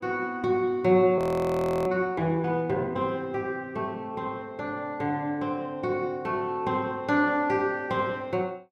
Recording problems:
audio freezing; at 1 s for 0.5 s

